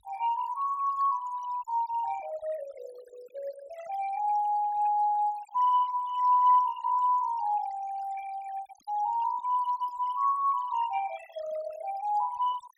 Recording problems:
denoising artefacts; signal-to-artefact ratio 21 dB

